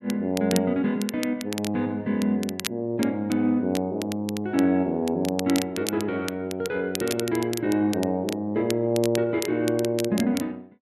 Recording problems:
crackle; vinyl, SNR 11 dB

